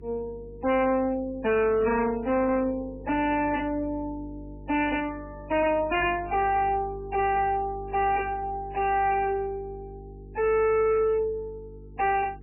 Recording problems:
lossy codec; MP3, log-spectral distance 2 dB, nothing above 2.8 kHz
distortion; hard clipping, signal-to-distortion ratio 7 dB
hum; 50 Hz, harmonics up to 450 Hz, SNR 18 dB
static burst; 4 times, first at 1.5 s; peak -13 dB vs average level

